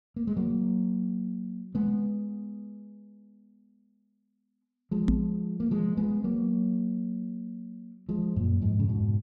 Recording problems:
knock on the microphone; at 5 s; peak +7 dB vs average level

